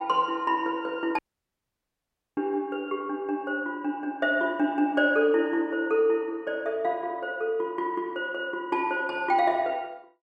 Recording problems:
audio cutting out; at 1 s for 1 s

